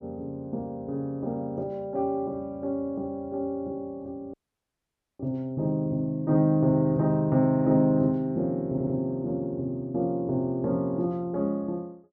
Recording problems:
dropout; at 4.5 s for 1 s
stutter; at 8.5 s

